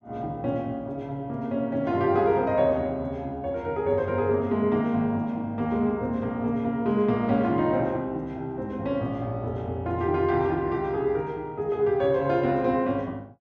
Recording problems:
none

